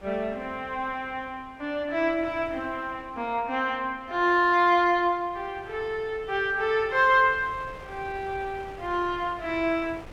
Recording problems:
wind on the microphone; below 1.1 kHz, SNR 22 dB

